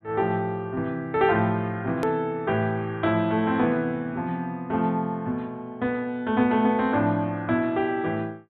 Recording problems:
low-pass filter; nothing above 4 kHz
hard cut with a click; at 2 s

